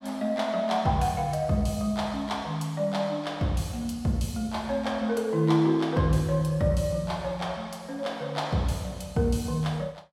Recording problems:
none

